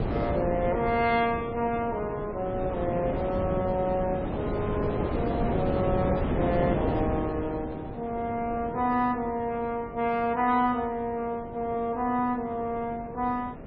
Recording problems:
codec artefacts; MP3, log-spectral distance 2 dB, nothing above 4.6 kHz
wind on the microphone; below 540 Hz, SNR 3 dB

